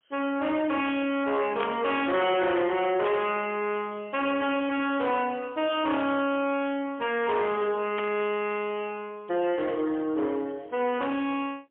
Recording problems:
phone line; 240 Hz to 3.4 kHz, AMR-NB, then MP3
distortion; soft clipping, signal-to-distortion ratio 9 dB
burst of static; 4 times, first at 1.5 s; peak -4 dB vs average level

